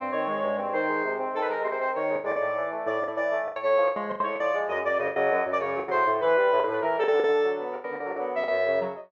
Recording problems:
packet loss; 11% of the sound replaced, filled with the last packet

